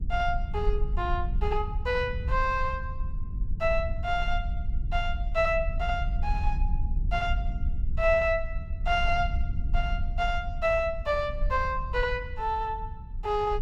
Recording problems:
rumble; below 62 Hz, SNR 4 dB

